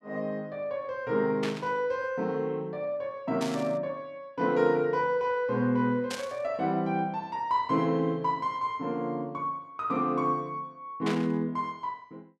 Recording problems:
static burst; 4 times, first at 1.5 s; peak -2 dB vs average level

